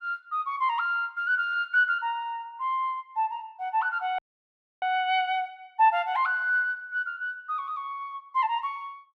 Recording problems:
audio cutting out; at 4 s for 0.5 s

